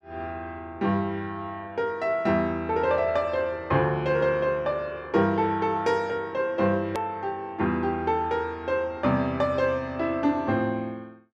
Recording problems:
hard cut with a click; at 7 s

